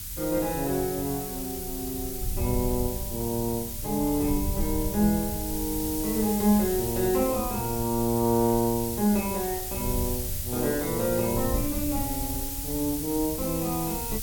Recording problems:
background hiss; slope +5 dB per octave, SNR 5 dB
wind noise; below 96 Hz, SNR 10 dB

